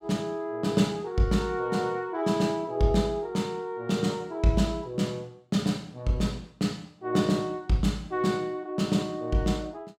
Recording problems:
none

